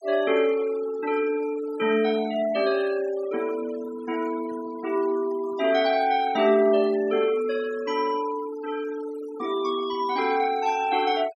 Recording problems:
noise reduction artefacts; signal-to-artefact ratio 18 dB

